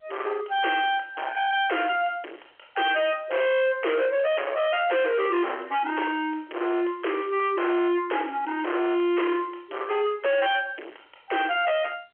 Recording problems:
telephone audio; 300 Hz to 3.3 kHz, G.711
distortion; hard clipping, signal-to-distortion ratio 6 dB

